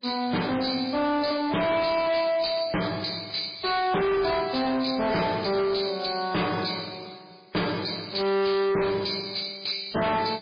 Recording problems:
codec artefacts; MP3, log-spectral distance 9 dB, nothing above 4.8 kHz
distorted audio; hard clipping, signal-to-distortion ratio 6 dB

